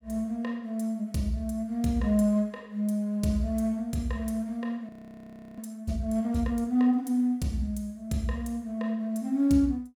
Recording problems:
frozen audio; at 5 s for 0.5 s

